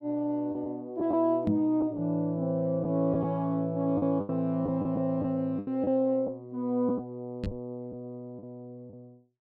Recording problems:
lost packets; 7% of the sound replaced, filled with the last packet
microphone thump; at 1.5 s and at 7.5 s; peak +4 dB vs average level

